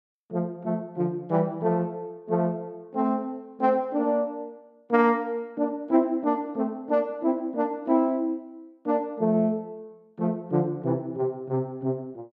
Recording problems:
none

